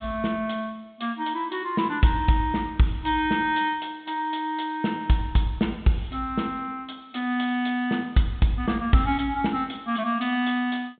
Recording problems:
treble cut off; nothing above 4 kHz

